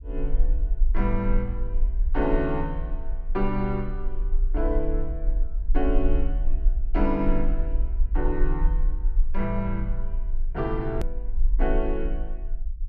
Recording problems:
low-frequency rumble; below 38 Hz, strongest tone 20 Hz, SNR -1 dB
click at an edit; at 11 s

